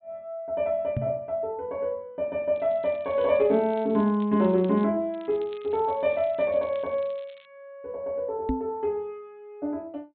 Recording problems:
treble cut off; nothing above 4 kHz
knock on the microphone; at 1 s and at 8.5 s; peak +2 dB vs average level
crackle; from 2.5 to 5 s and from 5 to 7.5 s; loose cable, SNR 29 dB

